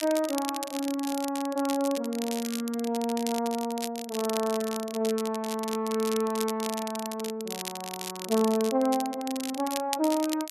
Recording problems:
crackling; vinyl, SNR 9 dB

